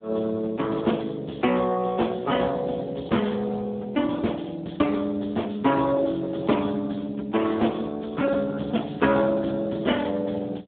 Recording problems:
phone line; 220 Hz to 3.5 kHz, Speex

